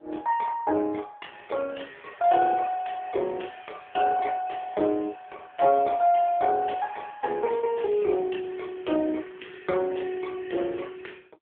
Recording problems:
telephone audio; 300 Hz to 3.4 kHz, AMR-NB

